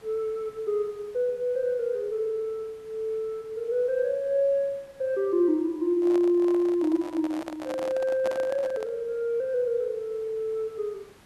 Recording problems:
hiss; slope -4 dB per octave, SNR 28 dB
handling noise; from 6 to 9 s; peak -3 dB vs average level

